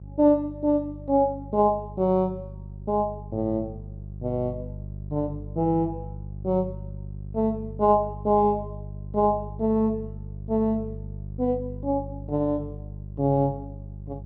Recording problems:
hum; 50 Hz, harmonics up to 400 Hz, SNR 13 dB

